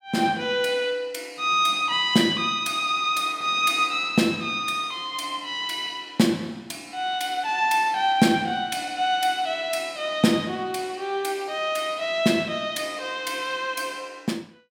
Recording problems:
none

